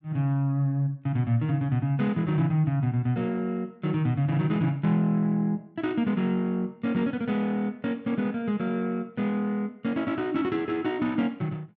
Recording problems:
none

